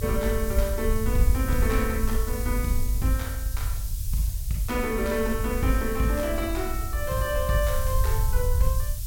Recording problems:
hiss; slope +6 dB per octave, SNR 10 dB
rumble; below 70 Hz, SNR 1 dB

